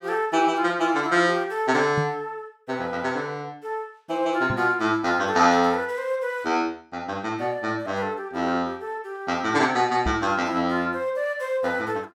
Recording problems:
microphone thump; at 2 s, at 4.5 s and at 10 s; peak 0 dB vs average level

